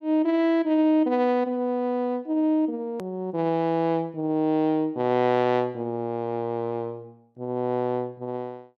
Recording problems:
hard cut with a click; at 3 s

